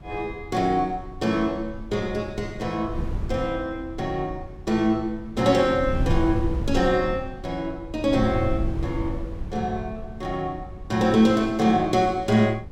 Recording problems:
wind on the microphone; below 120 Hz, SNR 10 dB

